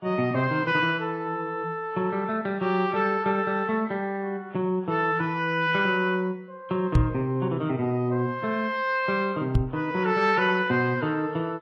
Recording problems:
codec artefacts; Vorbis, log-spectral distance 2 dB
microphone thump; at 7 s and at 9.5 s; peak +8 dB vs average level

